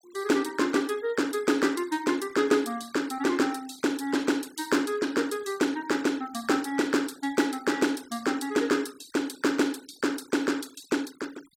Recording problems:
denoising artefacts; signal-to-artefact ratio 22 dB

